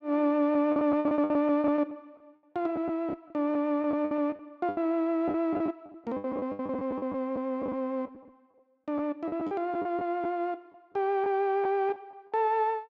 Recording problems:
packet loss; 13% of the sound replaced, filled with the last packet

